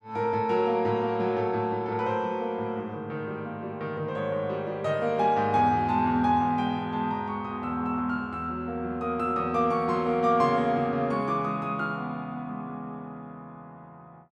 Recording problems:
none

